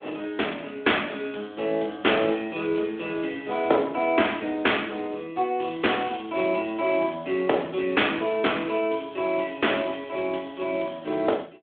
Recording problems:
phone line; 260 Hz to 3.5 kHz, Speex

